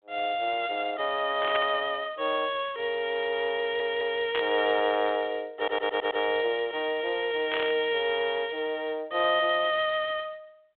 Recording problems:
phone line; 300 Hz to 3.4 kHz, G.726
burst of static; at 1.5 s, at 4.5 s and at 7.5 s; peak +1 dB vs average level
audio stuttering; at 3.5 s and at 5.5 s

